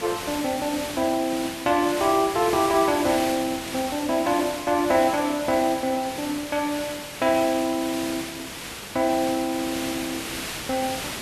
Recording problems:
hiss; slope -2 dB per octave, SNR 8 dB

